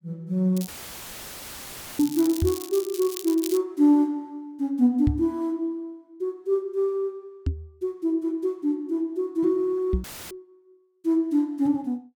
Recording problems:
crackle; from 0.5 to 3.5 s; loose cable, SNR 12 dB
dropout; at 0.5 s for 1.5 s and at 10 s; filled with static
knock on the microphone; 4 times, first at 2.5 s; peak +5 dB vs average level

